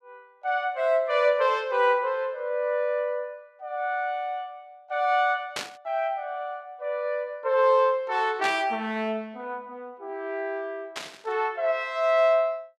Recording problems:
static burst; at 5.5 s, at 8.5 s and at 11 s; peak -1 dB vs average level

